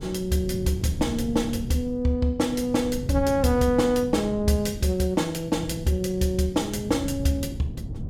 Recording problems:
wind on the microphone; below 180 Hz, SNR 11 dB

